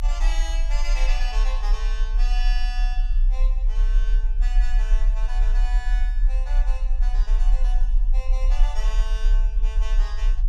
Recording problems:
rumble; below 38 Hz, strongest tone 32 Hz, SNR -13 dB

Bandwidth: 15.5 kHz